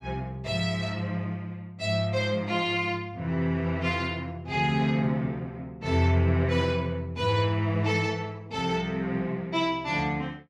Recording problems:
none

